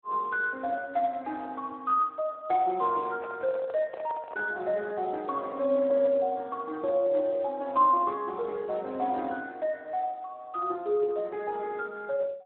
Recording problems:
phone line; 220 Hz to 3.7 kHz, Speex
microphone handling noise; from 3 to 4.5 s; peak -9 dB vs average level

